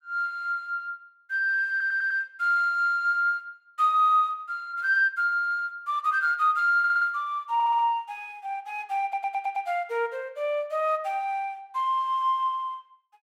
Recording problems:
audio stuttering; 4 times, first at 1.5 s

